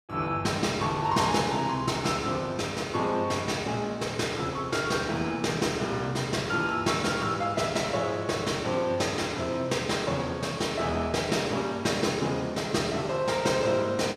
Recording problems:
none

